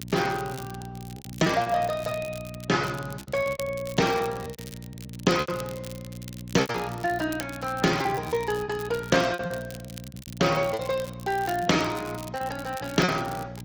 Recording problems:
lossy codec; Speex, then Opus, log-spectral distance 3 dB
hum; 60 Hz, harmonics up to 540 Hz, SNR 13 dB
crackling; vinyl, SNR 18 dB
packet loss; 11% of the sound replaced, filled with repeated pitch periods

